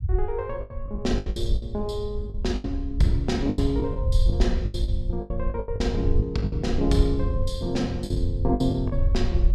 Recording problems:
rumble; below 70 Hz, SNR 1 dB
lost packets; 13% of the sound replaced, filled with the last packet

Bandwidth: 14.5 kHz